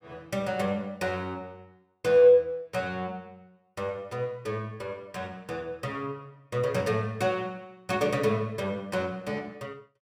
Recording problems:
none

